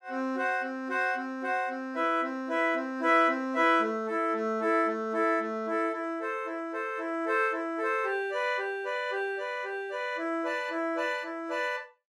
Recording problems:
none

